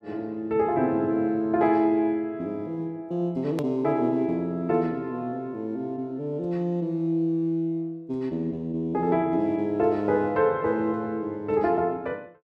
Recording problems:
edit click; at 3.5 s

